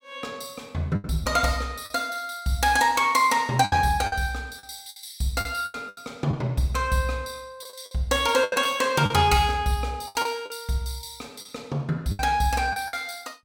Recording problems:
lost packets; 9% of the sound replaced, filled with the last packet

